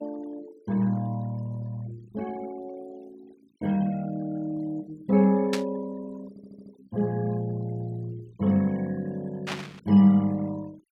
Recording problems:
denoising artefacts; signal-to-artefact ratio 23 dB
burst of static; at 5.5 s and at 9.5 s; peak 0 dB vs average level
stutter; at 6.5 s

